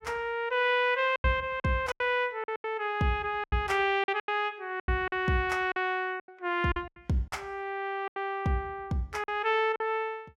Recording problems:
lost packets; 11% of the sound replaced, filled with silence

